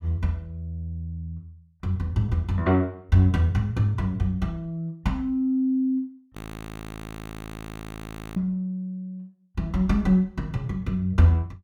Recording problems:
audio freezing; at 6.5 s for 2 s

